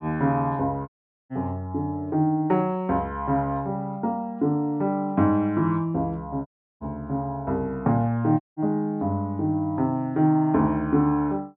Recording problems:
treble missing; nothing above 5.5 kHz
dropout; at 1 s, at 6.5 s and at 8.5 s

